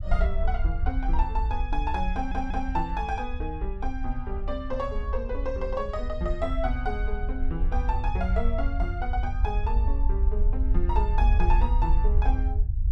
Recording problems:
rumble; below 58 Hz, SNR -3 dB
stutter; at 2 s

